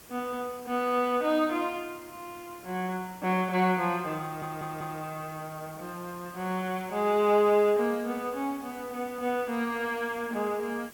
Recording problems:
hiss; slope -3 dB per octave, SNR 20 dB
audio stuttering; at 4 s

